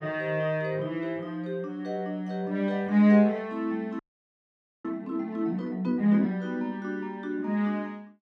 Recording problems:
frozen audio; at 4 s for 1 s

